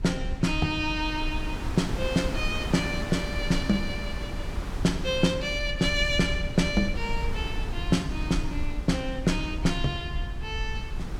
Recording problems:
low-frequency rumble; below 68 Hz, SNR 8 dB
wind on the microphone; below 840 Hz, SNR 10 dB

